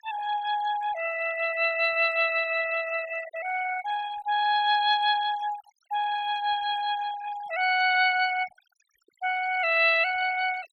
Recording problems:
noise reduction artefacts; signal-to-artefact ratio 15 dB

